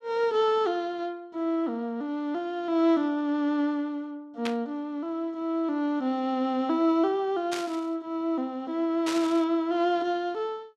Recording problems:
static burst; at 4.5 s, at 7.5 s and at 9 s; peak -2 dB vs average level

